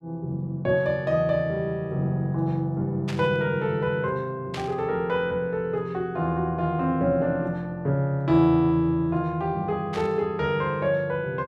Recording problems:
burst of static; at 3 s, at 4.5 s and at 10 s; peak -6 dB vs average level

